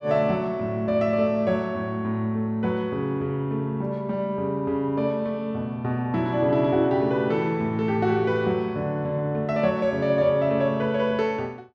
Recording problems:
none

